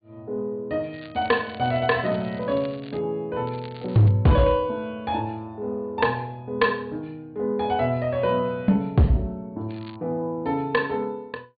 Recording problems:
low-pass filter; nothing above 4.6 kHz
distorted audio; hard clipping, signal-to-distortion ratio 11 dB
crackling; from 1 to 3 s, at 3.5 s and at 9.5 s; loose cable, SNR 23 dB

